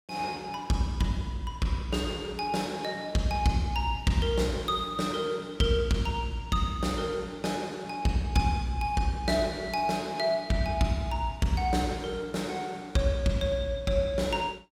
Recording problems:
none

